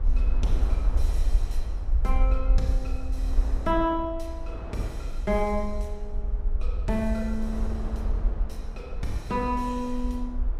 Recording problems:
rumble; below 54 Hz, SNR 0 dB
wind on the microphone; below 700 Hz, SNR 13 dB

